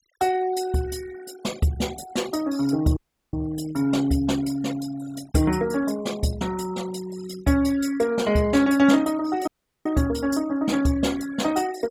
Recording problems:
noise reduction artefacts; signal-to-artefact ratio 18 dB
audio cutting out; at 3 s and at 9.5 s

